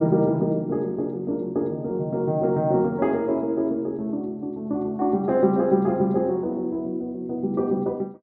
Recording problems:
none

